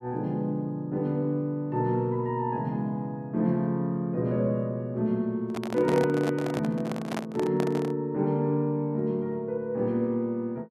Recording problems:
handling noise; from 5.5 to 8 s; peak -2 dB vs average level

